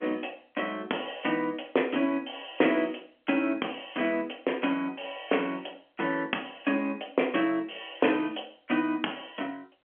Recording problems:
phone line; 240 Hz to 3.4 kHz, G.711

